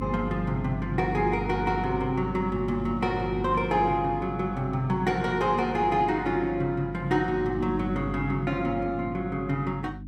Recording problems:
electrical hum; 50 Hz, harmonics up to 300 Hz, SNR 9 dB

